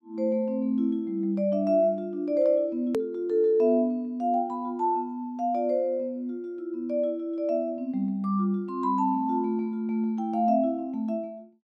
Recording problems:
click at an edit; at 3 s

